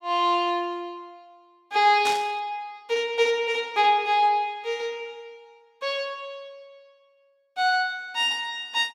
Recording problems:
burst of static; at 2 s; peak -3 dB vs average level

